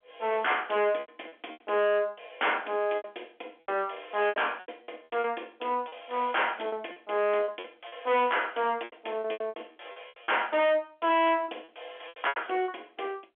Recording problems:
telephone audio; 260 Hz to 3.4 kHz, G.711
distorted audio; soft clipping, signal-to-distortion ratio 7 dB
lost packets; 13% of the sound replaced, filled with repeated pitch periods

